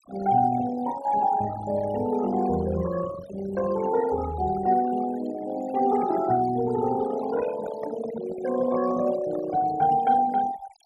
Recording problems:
denoising artefacts; signal-to-artefact ratio 14 dB
microphone handling noise; from 7 to 9.5 s; peak -7 dB vs average level

